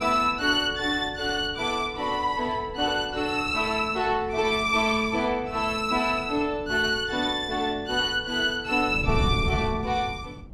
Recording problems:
wind on the microphone; below 180 Hz, SNR 13 dB

